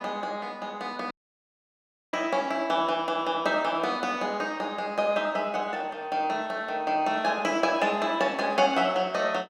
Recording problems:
audio cutting out; at 1 s for 1 s

